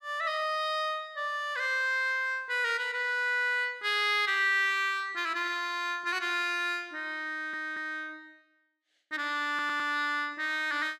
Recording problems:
stutter; at 7.5 s and at 9.5 s

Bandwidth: 14 kHz